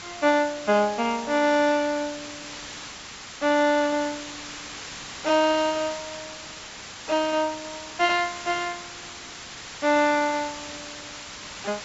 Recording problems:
low-pass filter; nothing above 8 kHz
background hiss; slope 0 dB per octave, SNR 13 dB

